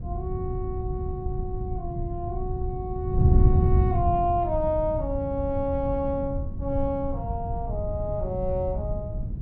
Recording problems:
wind noise; below 130 Hz, SNR -1 dB

